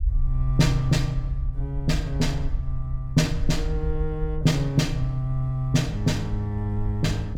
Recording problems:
low-frequency rumble; below 58 Hz, SNR 6 dB

